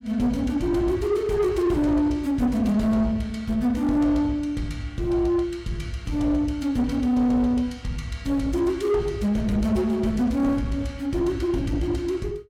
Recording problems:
distorted audio; soft clipping, signal-to-distortion ratio 12 dB

